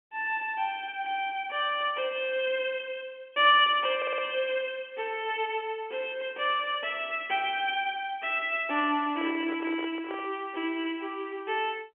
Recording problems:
telephone audio; 260 Hz to 3.2 kHz, G.711
audio stuttering; at 4 s
handling noise; from 9 to 10 s; peak -7 dB vs average level

